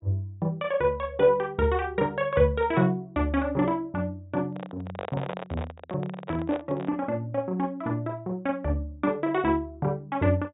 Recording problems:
low-pass filter; nothing above 4 kHz
microphone handling noise; from 4.5 to 7 s; peak -3 dB vs average level

